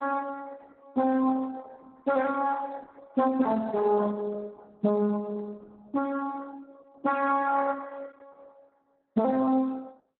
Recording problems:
codec artefacts; Speex, then Opus, log-spectral distance 3 dB, nothing above 4 kHz

